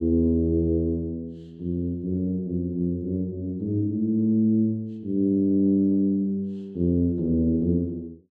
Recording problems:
none

